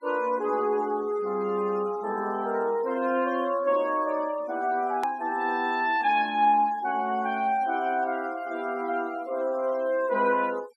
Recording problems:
denoising artefacts; signal-to-artefact ratio 21 dB
click at an edit; at 5 s

